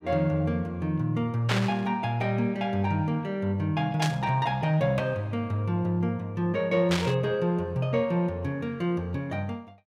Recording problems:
static burst; at 1.5 s, at 4 s and at 7 s; peak +4 dB vs average level

